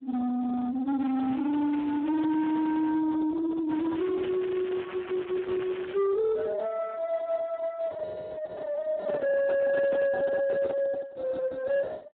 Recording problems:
phone line; 670 Hz to 2 kHz, Speex
distorted audio; soft clipping, signal-to-distortion ratio 11 dB
crackle; from 1 to 3 s and from 3.5 to 6 s; loose cable, SNR 17 dB
microphone handling noise; from 9 to 11 s; peak -1 dB vs average level

